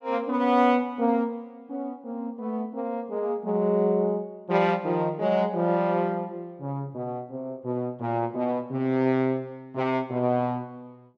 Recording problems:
none

